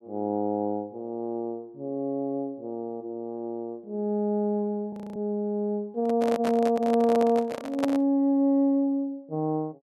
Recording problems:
frozen audio; at 5 s
handling noise; from 6 to 8 s; peak +2 dB vs average level

